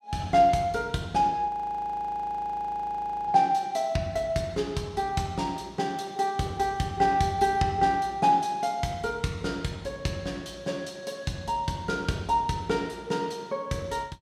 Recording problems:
audio freezing; at 1.5 s for 2 s

